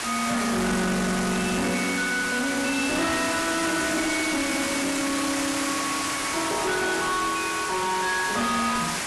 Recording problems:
lossy compression; AAC, log-spectral distance 11 dB, nothing above 12 kHz
distortion; hard clipping, uneven, signal-to-distortion ratio 7 dB
background hiss; slope -1 dB per octave, SNR 3 dB

